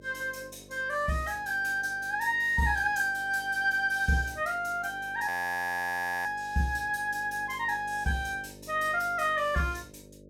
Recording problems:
electrical hum; 50 Hz, harmonics up to 600 Hz, SNR 23 dB
frozen audio; at 5.5 s for 1 s

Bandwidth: 17.5 kHz